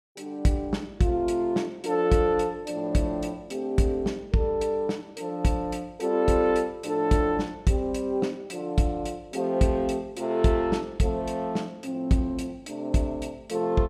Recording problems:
none

